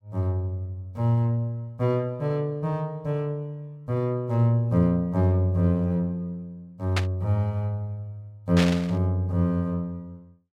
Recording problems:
burst of static; at 7 s and at 8.5 s; peak +2 dB vs average level

